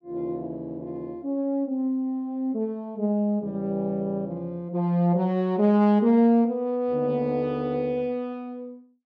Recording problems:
none

